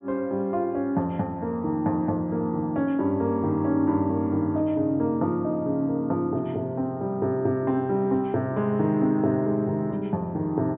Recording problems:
treble missing; nothing above 4 kHz

